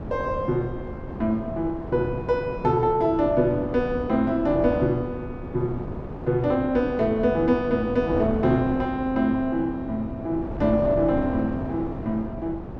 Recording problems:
wind on the microphone; below 430 Hz, SNR 9 dB

